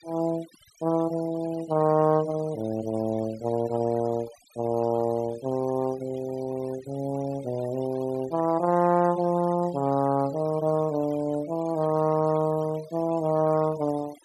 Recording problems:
noise reduction artefacts; signal-to-artefact ratio 21 dB

